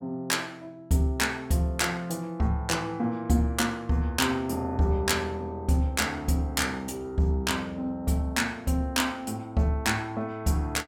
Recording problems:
none

